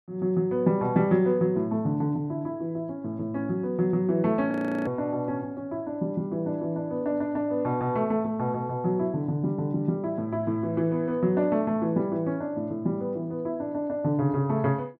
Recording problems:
audio freezing; at 4.5 s

